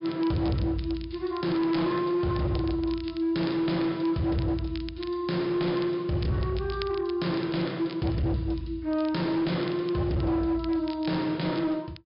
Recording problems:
low-pass filter; nothing above 5.5 kHz
distortion; hard clipping, signal-to-distortion ratio 11 dB
crackle; vinyl, SNR 20 dB

